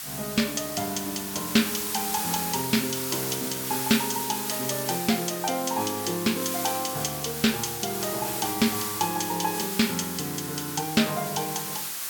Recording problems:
background hiss; SNR 3 dB

